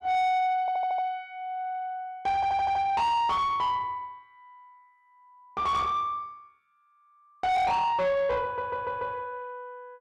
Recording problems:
distortion; soft clipping, signal-to-distortion ratio 7 dB
audio stuttering; at 0.5 s, at 2.5 s and at 8.5 s

